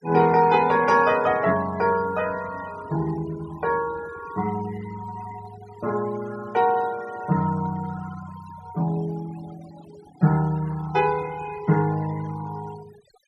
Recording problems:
denoising artefacts; signal-to-artefact ratio 19 dB

